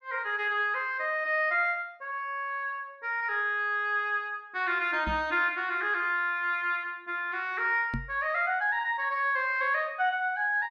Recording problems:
knock on the microphone; at 5 s and at 8 s; peak -1 dB vs average level

